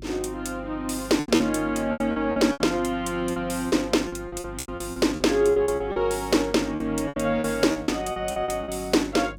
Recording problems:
electrical hum; 50 Hz, harmonics up to 350 Hz, SNR 17 dB
lost packets; 14% of the sound replaced, filled with repeated pitch periods

